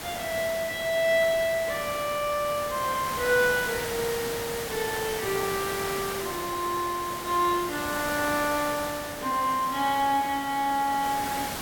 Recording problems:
background hiss; slope -3 dB per octave, SNR 7 dB

